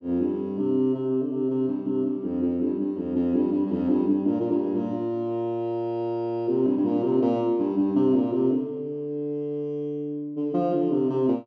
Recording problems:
none

